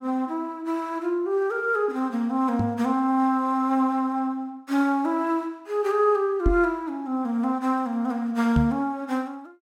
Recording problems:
microphone thump; at 2.5 s, at 6.5 s and at 8.5 s; peak +5 dB vs average level

